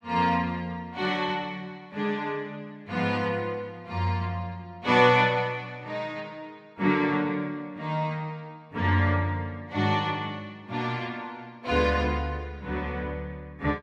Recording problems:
none

